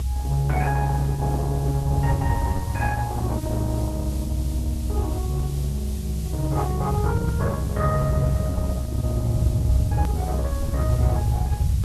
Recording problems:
lossy codec; Opus, log-spectral distance 2 dB, nothing above 13.1 kHz
hiss; SNR 15 dB
rumble; below 96 Hz, strongest tone 64 Hz, SNR -4 dB
edit click; at 10 s

